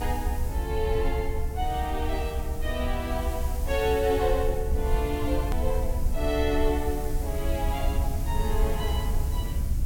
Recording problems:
background hiss; SNR 14 dB
rumble; below 70 Hz, SNR 0 dB
edit click; at 5.5 s

